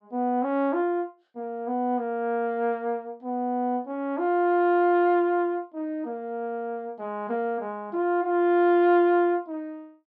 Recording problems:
none

